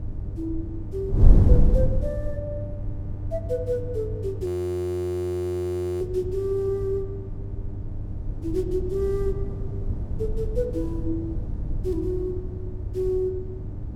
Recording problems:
electrical hum; 50 Hz, harmonics up to 600 Hz, SNR 8 dB
wind noise; below 92 Hz, SNR 0 dB
audio freezing; at 4.5 s for 1.5 s

